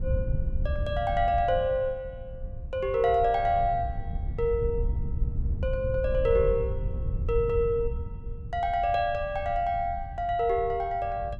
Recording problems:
wind on the microphone; below 90 Hz, SNR 7 dB

